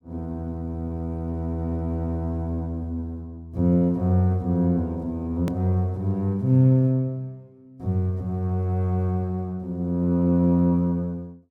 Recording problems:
edit click; at 5.5 s

